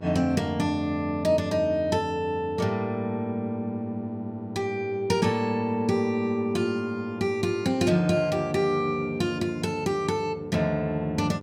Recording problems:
electrical hum; 50 Hz, harmonics up to 1.4 kHz, SNR 18 dB

